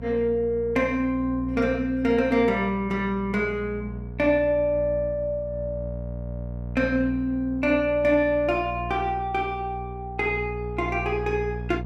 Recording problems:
electrical hum; 60 Hz, harmonics up to 720 Hz, SNR 11 dB

